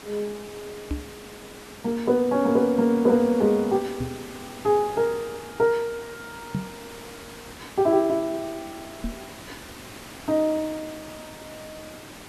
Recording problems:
background hiss; slope -3 dB per octave, SNR 18 dB
knock on the microphone; 4 times, first at 1 s; peak -1 dB vs average level

